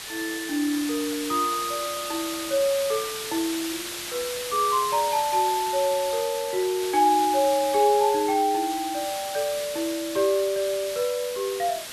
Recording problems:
hiss; slope +1 dB per octave, SNR 8 dB

